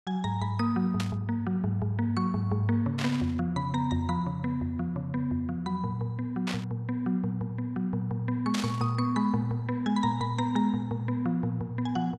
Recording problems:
burst of static; 4 times, first at 1 s; peak 0 dB vs average level

